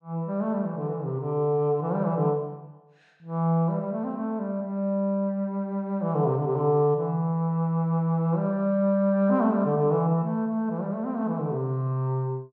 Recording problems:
none

